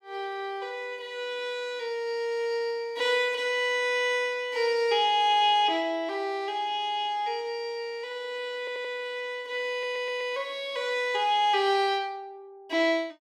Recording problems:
audio stuttering; at 8.5 s and at 9.5 s

